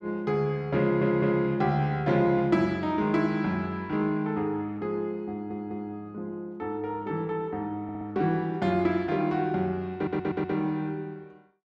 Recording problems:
stutter; 4 times, first at 1 s

